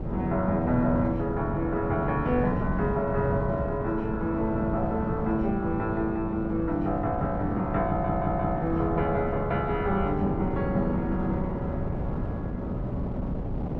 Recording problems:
wind on the microphone; below 280 Hz, SNR 5 dB
stutter; at 8 s

